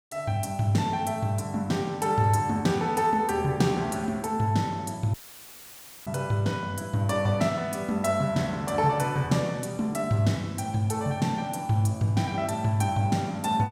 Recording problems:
audio cutting out; at 5 s for 1 s; filled with static

